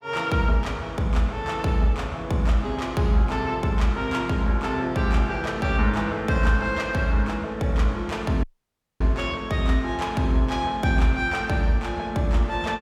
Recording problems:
dropout; at 8.5 s for 0.5 s

